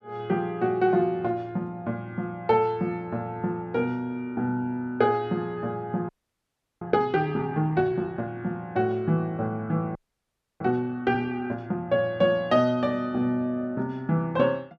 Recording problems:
audio freezing; at 6 s for 0.5 s and at 10 s for 0.5 s

